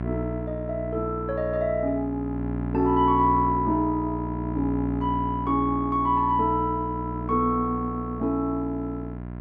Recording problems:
hum; 60 Hz, harmonics up to 1.4 kHz, SNR 7 dB

